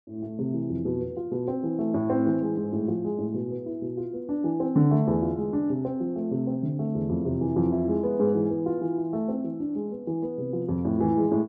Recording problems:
none

